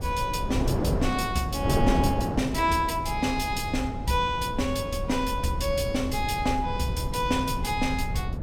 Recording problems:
low-frequency rumble; below 110 Hz, SNR 8 dB
wind noise; below 420 Hz, SNR 5 dB

